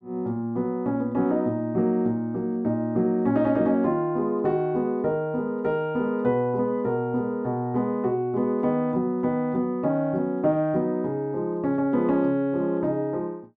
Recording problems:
none

